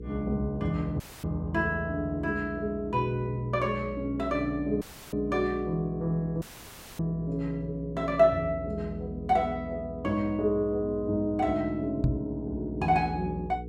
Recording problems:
electrical hum; 60 Hz, harmonics up to 480 Hz, SNR 13 dB
dropout; at 1 s, at 5 s and at 6.5 s for 0.5 s; filled with static
microphone thump; at 12 s; peak +7 dB vs average level

